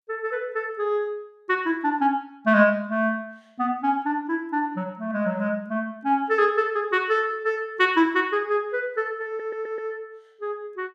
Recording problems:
audio stuttering; at 9.5 s

